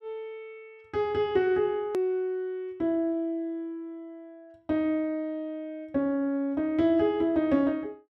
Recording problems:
hard cut with a click; at 2 s

